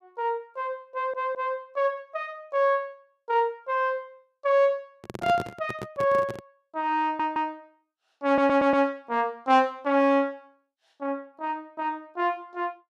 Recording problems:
audio stuttering; at 1 s, at 7 s and at 8.5 s
microphone handling noise; from 5 to 6.5 s; peak -2 dB vs average level

